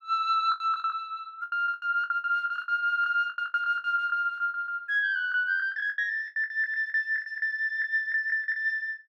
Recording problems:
packet loss; 18% of the sound replaced, filled with the last packet

